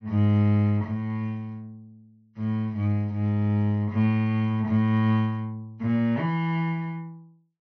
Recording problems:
treble missing; nothing above 6.1 kHz

